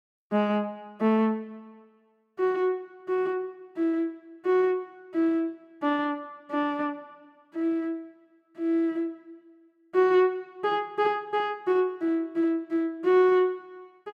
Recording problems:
none

